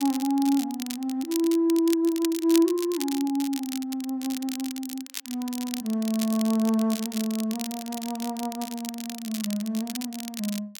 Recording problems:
crackling; vinyl, SNR 10 dB

